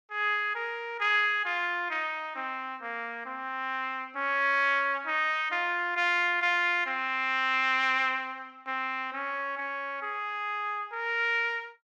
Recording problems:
none

